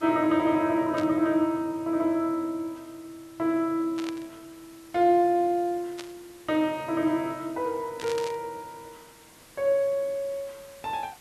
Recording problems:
background hiss; slope -2 dB per octave, SNR 25 dB
static burst; 4 times, first at 1 s; peak -8 dB vs average level

